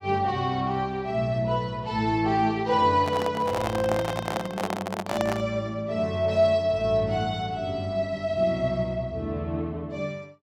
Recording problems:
microphone handling noise; from 3 to 5.5 s; peak +1 dB vs average level

